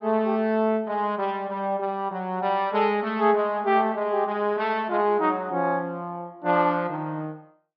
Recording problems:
low-pass filter; nothing above 5.5 kHz

